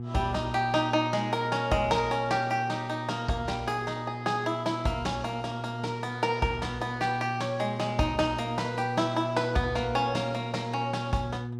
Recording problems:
mains hum; 60 Hz, harmonics up to 720 Hz, SNR 8 dB

